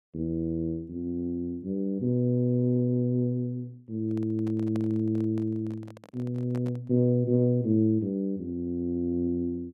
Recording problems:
handling noise; from 4 to 7 s; peak -9 dB vs average level

